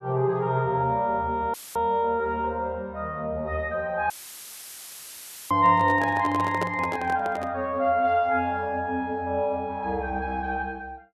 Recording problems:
audio cutting out; at 1.5 s and at 4 s for 1.5 s; filled with static
handling noise; from 5.5 to 7.5 s; peak 0 dB vs average level

